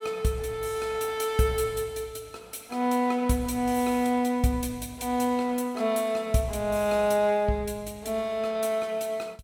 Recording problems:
none

